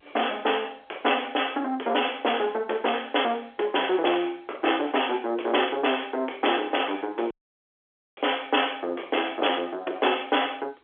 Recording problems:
phone line; 300 Hz to 3.4 kHz, G.711
distorted audio; soft clipping, signal-to-distortion ratio 11 dB
audio cutting out; at 7.5 s for 1 s

